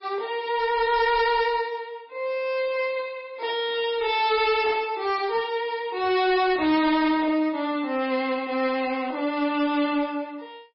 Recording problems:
lossy compression; MP3, log-spectral distance 2 dB, nothing above 5.3 kHz
distortion; hard clipping, uneven, signal-to-distortion ratio 9 dB

